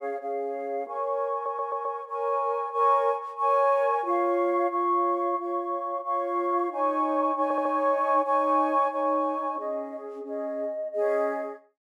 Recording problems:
stutter; at 1.5 s and at 7.5 s

